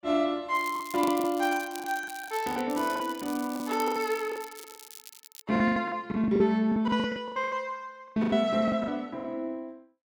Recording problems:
lost packets; 15% of the sound replaced, filled with the last packet
crackle; from 0.5 to 5.5 s; loose cable, SNR 16 dB

